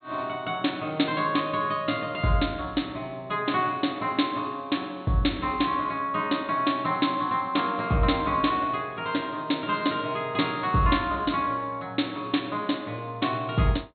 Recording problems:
low-pass filter; nothing above 4.4 kHz

